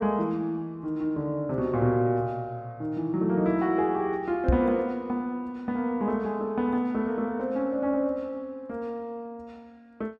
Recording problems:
microphone thump; at 4.5 s; peak +7 dB vs average level

